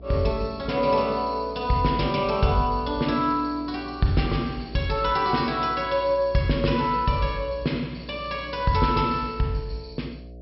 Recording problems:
low-pass filter; nothing above 5.5 kHz
electrical hum; 60 Hz, harmonics up to 720 Hz, SNR 19 dB

